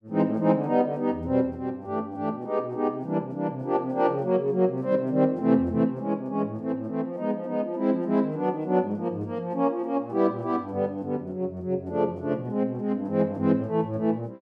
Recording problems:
none

